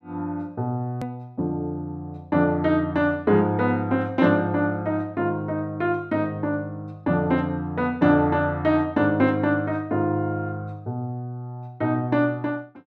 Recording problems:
click at an edit; at 1 s

